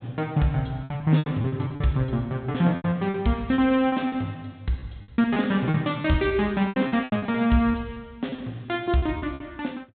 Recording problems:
treble missing; nothing above 4 kHz
lost packets; 14% of the sound replaced, filled with repeated pitch periods

